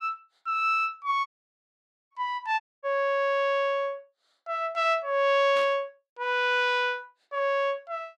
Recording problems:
audio cutting out; at 1.5 s for 1 s and at 2.5 s
static burst; at 5.5 s; peak -10 dB vs average level

